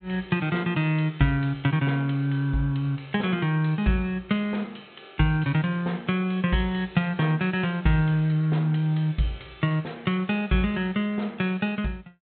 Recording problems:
treble cut off; nothing above 4 kHz

